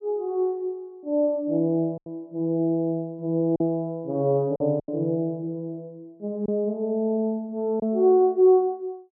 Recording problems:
packet loss; 3% of the sound replaced, filled with silence

